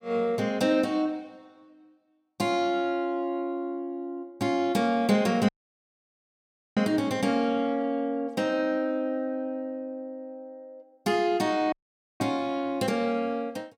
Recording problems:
dropout; at 5.5 s for 1.5 s and at 12 s

